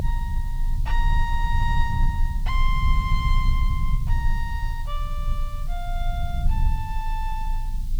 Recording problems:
hiss; slope +5 dB per octave, SNR 18 dB
low-frequency rumble; below 58 Hz, strongest tone 26 Hz, SNR -6 dB

